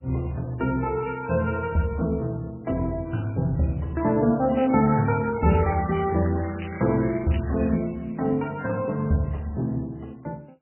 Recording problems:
codec artefacts; MP3, log-spectral distance 6 dB, nothing above 2.7 kHz
crackle; from 4.5 to 7.5 s; loose cable, SNR 15 dB

